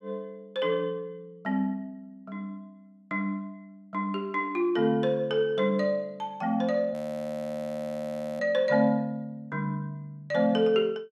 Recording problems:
audio freezing; at 7 s for 1.5 s

